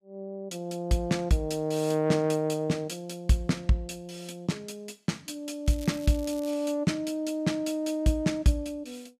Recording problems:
crackle; at 5.5 s; loose cable, SNR 19 dB

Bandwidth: 14.5 kHz